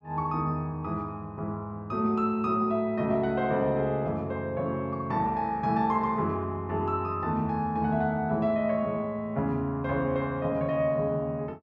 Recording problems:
none

